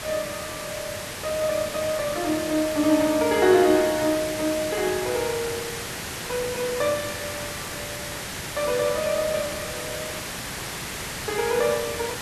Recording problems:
hiss; slope -2 dB per octave, SNR 6 dB

